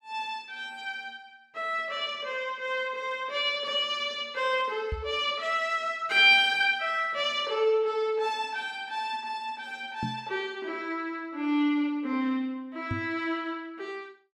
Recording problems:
microphone bump; at 5 s, at 10 s and at 13 s; peak -2 dB vs average level

